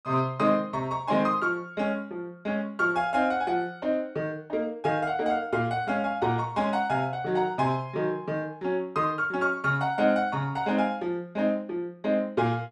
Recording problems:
none

